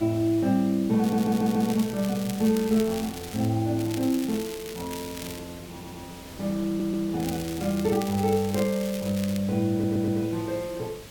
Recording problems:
hum; 50 Hz, harmonics up to 600 Hz, SNR 27 dB
hiss; slope -2 dB per octave, SNR 18 dB
wind noise; below 760 Hz, SNR 26 dB
stutter; 4 times, first at 1 s
crackle; from 1 to 3.5 s, from 4 to 5.5 s and from 7 to 9.5 s; loose cable, SNR 14 dB

